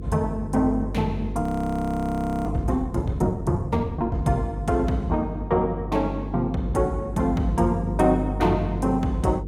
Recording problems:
hum; 50 Hz, harmonics up to 500 Hz, SNR 7 dB
audio freezing; at 1.5 s for 1 s

